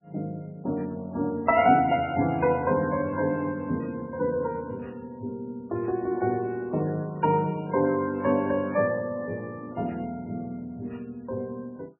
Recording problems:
codec artefacts; MP3, log-spectral distance 2 dB, nothing above 2.8 kHz

